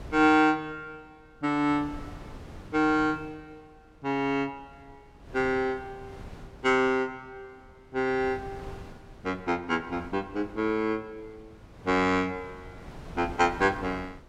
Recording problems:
wind on the microphone; below 480 Hz, SNR 20 dB

